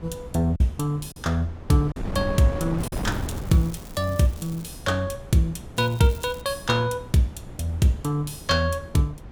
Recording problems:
wind on the microphone; below 300 Hz, SNR 12 dB
lost packets; 1.8% of the sound replaced, filled with silence
crackle; from 3 to 4.5 s and at 6 s; loose cable, SNR 22 dB

